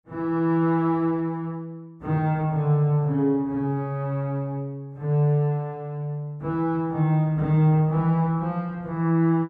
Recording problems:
none

